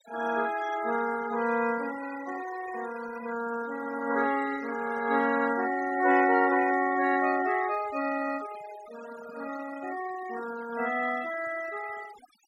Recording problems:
denoising artefacts; signal-to-artefact ratio 15 dB

